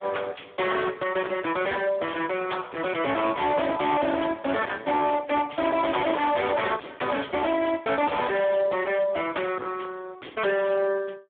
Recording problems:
phone line; 260 Hz to 2.3 kHz, Speex
distortion; hard clipping, signal-to-distortion ratio 7 dB

